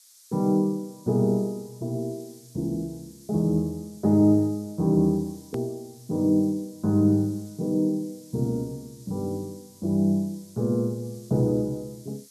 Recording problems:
hiss; SNR 25 dB
hard cut with a click; at 5.5 s

